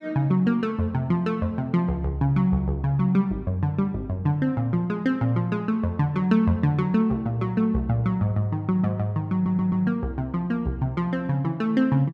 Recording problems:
audio stuttering; at 9.5 s

